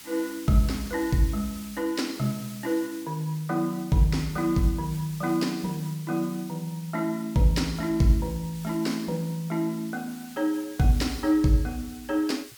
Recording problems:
hiss; SNR 17 dB

